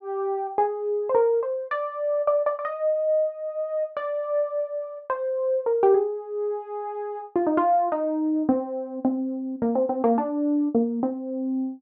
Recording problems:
none

